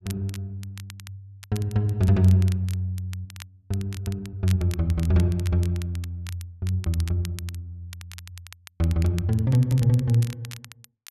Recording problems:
crackle; vinyl, SNR 20 dB

